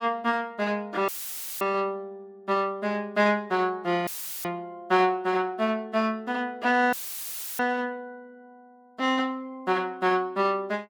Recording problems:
dropout; at 1 s for 0.5 s, at 4 s and at 7 s for 0.5 s; filled with static

